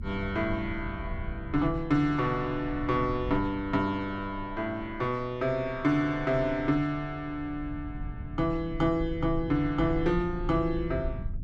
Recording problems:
low-frequency rumble; below 100 Hz, SNR 11 dB

